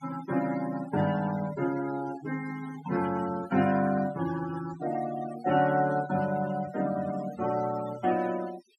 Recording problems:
noise reduction artefacts; signal-to-artefact ratio 13 dB

